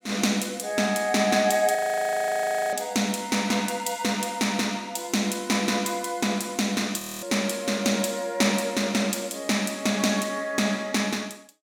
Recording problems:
audio freezing; at 2 s for 1 s and at 7 s

